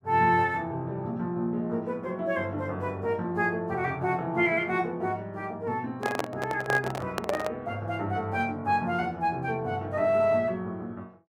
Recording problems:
microphone handling noise; from 6 to 7.5 s; peak +3 dB vs average level

